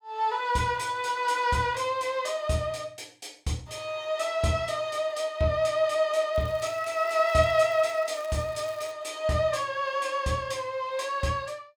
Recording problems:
crackling; from 6.5 to 9 s; loose cable, SNR 23 dB

